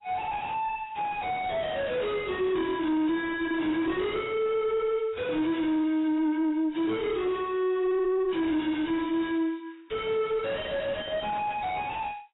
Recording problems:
lossy codec; AAC, log-spectral distance 3 dB, nothing above 3.8 kHz
distortion; soft clipping, signal-to-distortion ratio 5 dB

